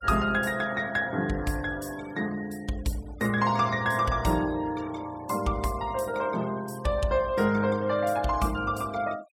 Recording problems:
noise reduction artefacts; signal-to-artefact ratio 21 dB

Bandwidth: 16 kHz